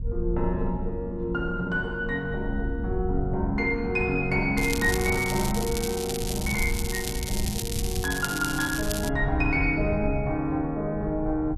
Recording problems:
wind on the microphone; below 84 Hz, SNR 7 dB
crackling; from 4.5 to 9 s; loose cable, SNR 6 dB

